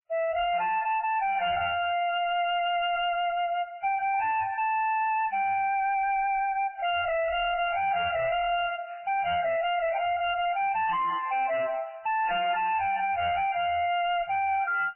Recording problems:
lossy compression; MP3, then AAC, log-spectral distance 4 dB, nothing above 2.8 kHz
distortion; hard clipping, signal-to-distortion ratio 6 dB

